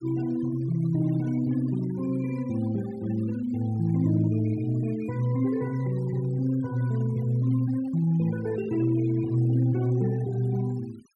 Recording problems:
noise reduction artefacts; signal-to-artefact ratio 21 dB

